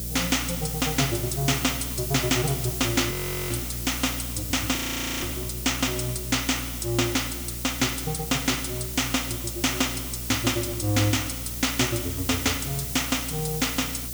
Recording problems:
electrical hum; 60 Hz, harmonics up to 660 Hz, SNR 11 dB
hiss; slope +4 dB per octave, SNR 6 dB
frozen audio; at 3 s and at 5 s

